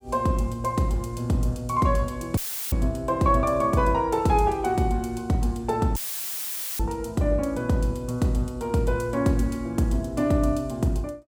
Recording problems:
audio cutting out; at 2.5 s and at 6 s for 1 s; filled with static

